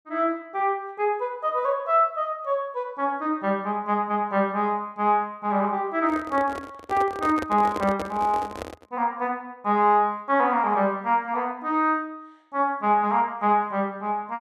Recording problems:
handling noise; from 6 to 9 s; peak -3 dB vs average level

